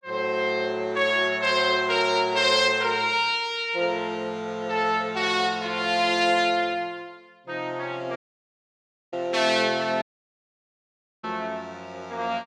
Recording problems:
audio cutting out; at 8 s for 1 s and at 10 s for 1 s

